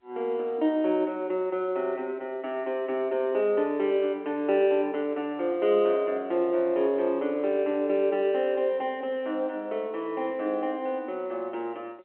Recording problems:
phone line; 260 Hz to 3.1 kHz, G.711

